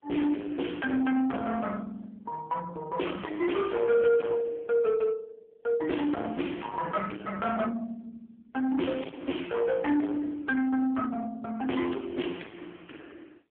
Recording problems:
telephone audio; 220 Hz to 3.4 kHz, AMR-NB
distorted audio; soft clipping, signal-to-distortion ratio 10 dB

